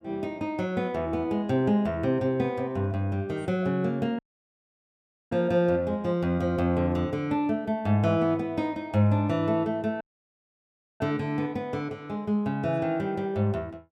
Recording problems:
audio cutting out; at 4 s for 1 s and at 10 s for 1 s

